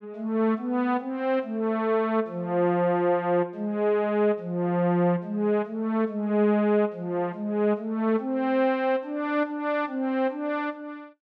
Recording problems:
none

